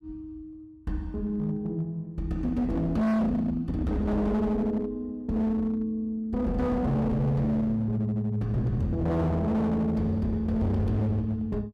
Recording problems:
distorted audio; hard clipping, signal-to-distortion ratio 7 dB

